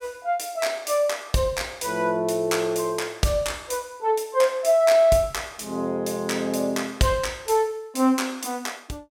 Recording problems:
none

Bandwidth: 16.5 kHz